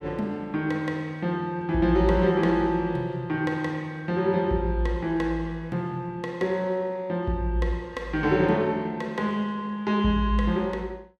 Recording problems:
none

